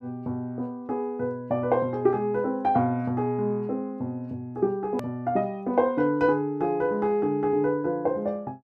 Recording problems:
edit click; at 5 s

